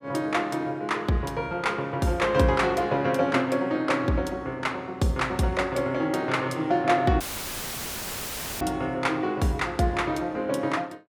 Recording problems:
dropout; at 7 s for 1.5 s; filled with static

